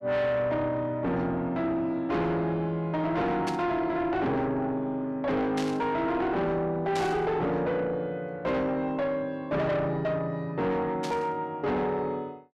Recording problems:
distortion; soft clipping, signal-to-distortion ratio 8 dB
static burst; 4 times, first at 3.5 s; peak -4 dB vs average level

